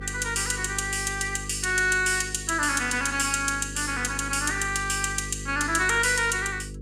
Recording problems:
hum; 50 Hz, harmonics up to 500 Hz, SNR 14 dB

